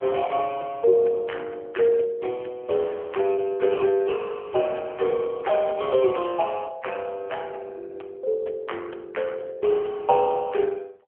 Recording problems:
telephone audio; 320 Hz to 3.3 kHz, AMR-NB

